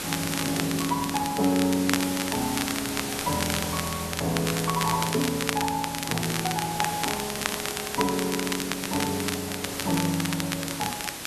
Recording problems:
background hiss; slope -2 dB per octave, SNR 4 dB
crackle; vinyl, SNR 4 dB

